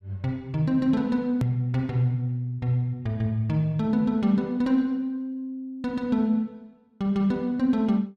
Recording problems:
click at an edit; at 1.5 s

